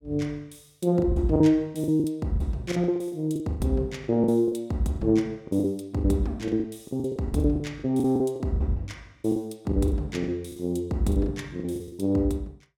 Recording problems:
packet loss; 15% of the sound replaced, filled with the last packet

